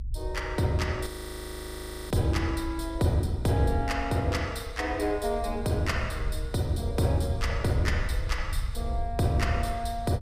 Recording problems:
rumble; below 66 Hz, SNR 7 dB
audio freezing; at 1 s for 1 s

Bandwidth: 15.5 kHz